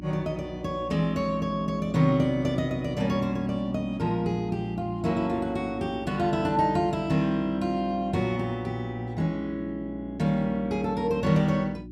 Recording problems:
hum; 60 Hz, harmonics up to 360 Hz, SNR 15 dB

